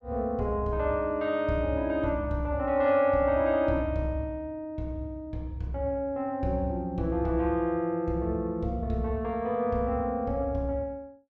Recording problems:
none

